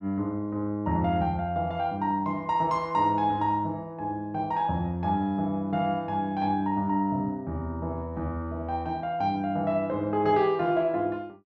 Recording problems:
none

